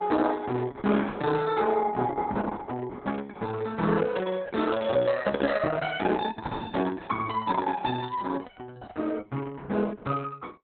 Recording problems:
lossy codec; Opus, log-spectral distance 4 dB, nothing above 3.7 kHz

